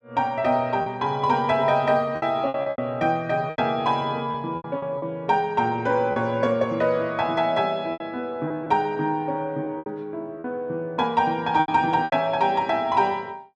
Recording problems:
packet loss; 7% of the sound replaced, filled with repeated pitch periods

